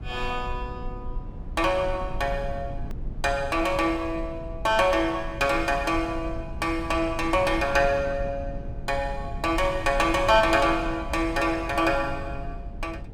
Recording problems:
low-frequency rumble; below 100 Hz, SNR 12 dB
click at an edit; at 3 s

